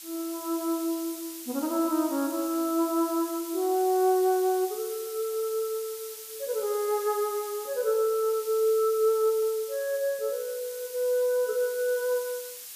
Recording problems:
hiss; slope +4 dB per octave, SNR 12 dB

